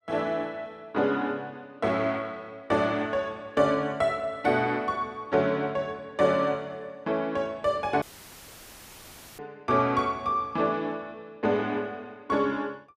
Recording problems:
dropout; at 8 s for 1.5 s; filled with static

